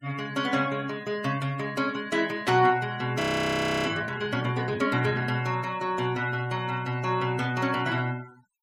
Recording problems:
noise reduction artefacts; signal-to-artefact ratio 22 dB
static burst; at 2.5 s; peak -2 dB vs average level
frozen audio; at 3 s for 0.5 s

